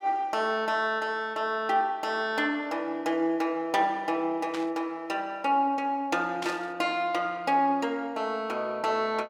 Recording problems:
static burst; at 4.5 s and at 6.5 s; peak -5 dB vs average level

